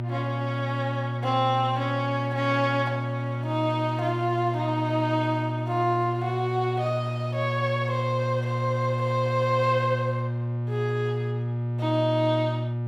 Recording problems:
hum; 60 Hz, harmonics up to 600 Hz, SNR 3 dB

